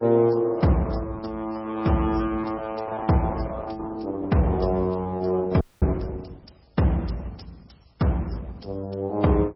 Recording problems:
codec artefacts; Opus, then MP3, log-spectral distance 3 dB, nothing above 5.3 kHz
frozen audio; at 5.5 s

